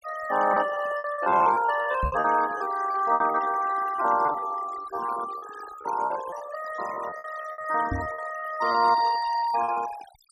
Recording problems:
noise reduction artefacts; signal-to-artefact ratio 13 dB
packet loss; 15% of the sound replaced, filled with repeated pitch periods
microphone thump; at 2 s and at 8 s; peak -1 dB vs average level

